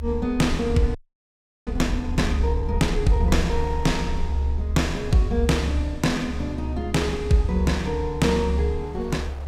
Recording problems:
rumble; below 72 Hz, strongest tone 70 Hz, SNR 4 dB
wind noise; below 900 Hz, SNR 25 dB
audio freezing; at 1 s for 0.5 s

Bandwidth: 16.5 kHz